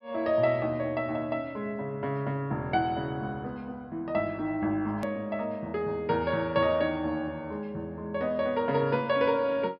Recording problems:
treble cut off; nothing above 5.5 kHz
edit click; at 5 s

